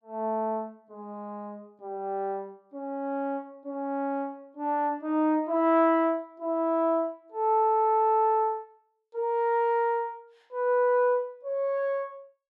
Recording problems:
none

